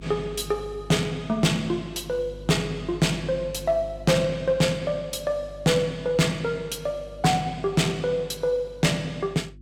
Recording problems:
distortion; hard clipping, uneven, signal-to-distortion ratio 11 dB
hum; 50 Hz, harmonics up to 350 Hz, SNR 19 dB

